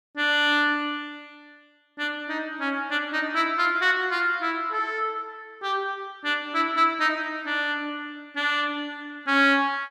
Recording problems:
none

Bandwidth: 14.5 kHz